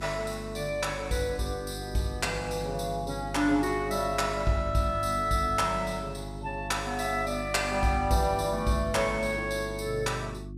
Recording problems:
mains hum; 50 Hz, harmonics up to 350 Hz, SNR 11 dB

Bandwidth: 15.5 kHz